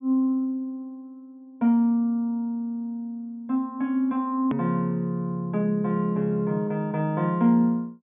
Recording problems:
low-pass filter; nothing above 3.5 kHz
click at an edit; at 4.5 s

